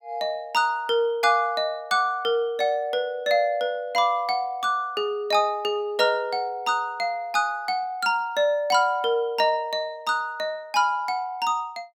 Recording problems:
none

